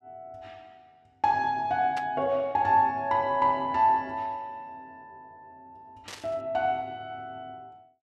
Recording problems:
burst of static; at 2 s and at 6 s; peak -8 dB vs average level

